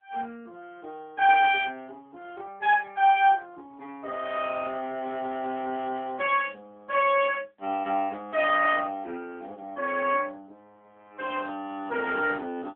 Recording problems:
phone line; 260 Hz to 3.7 kHz, AMR-NB

